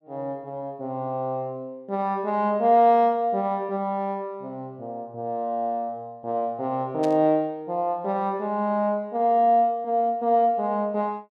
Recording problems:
static burst; at 7 s; peak -12 dB vs average level

